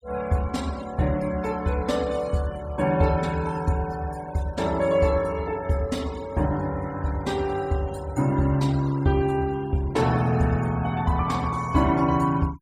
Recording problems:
noise reduction artefacts; signal-to-artefact ratio 21 dB

